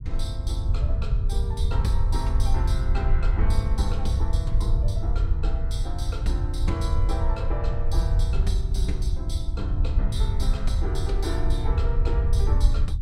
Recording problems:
low-frequency rumble; below 74 Hz, SNR -8 dB

